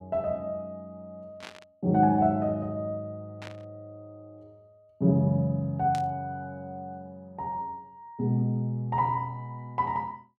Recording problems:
burst of static; at 1.5 s, at 3.5 s and at 6 s; peak -10 dB vs average level

